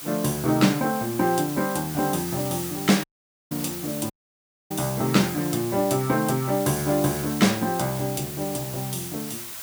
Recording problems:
background hiss; slope +1 dB per octave, SNR 9 dB
audio cutting out; at 3 s and at 4 s for 0.5 s

